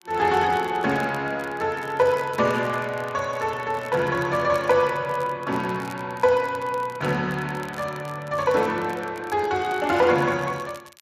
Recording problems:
lossy compression; Speex, log-spectral distance 3 dB
crackle; vinyl, SNR 24 dB

